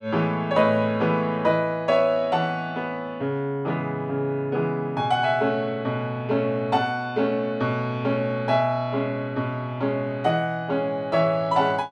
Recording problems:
none

